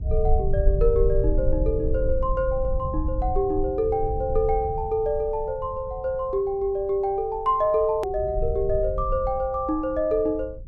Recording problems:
rumble; below 66 Hz, SNR 5 dB
edit click; at 8 s

